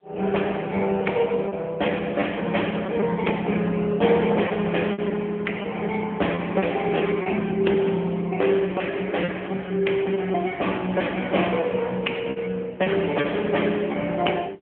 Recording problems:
telephone audio; 220 Hz to 3.3 kHz, AMR-NB
packet loss; 5% of the sound replaced, filled with repeated pitch periods

